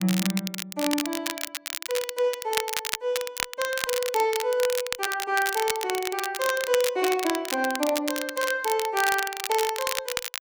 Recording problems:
crackle; vinyl, SNR 4 dB

